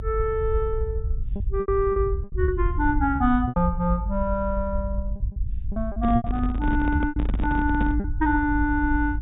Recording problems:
treble cut off; nothing above 4 kHz
rumble; below 72 Hz, SNR 4 dB
packet loss; 8% of the sound replaced, filled with repeated pitch periods
handling noise; from 6 to 8 s; peak 0 dB vs average level

